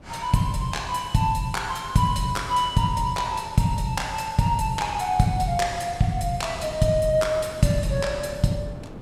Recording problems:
wind on the microphone; below 390 Hz, SNR 19 dB

